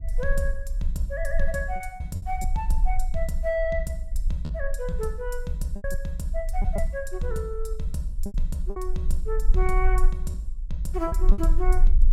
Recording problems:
low-frequency rumble; below 38 Hz, strongest tone 22 Hz, SNR -1 dB
packet loss; 5% of the sound replaced, filled with repeated pitch periods

